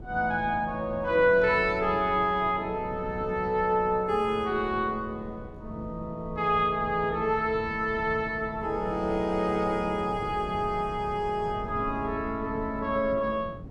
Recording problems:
wind noise; below 230 Hz, SNR 15 dB

